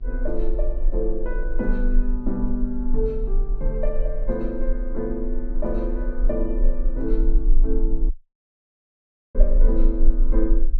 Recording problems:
mains hum; 60 Hz, harmonics up to 720 Hz, SNR 24 dB
low-frequency rumble; below 34 Hz, strongest tone 20 Hz, SNR -3 dB
audio cutting out; at 8 s for 1.5 s

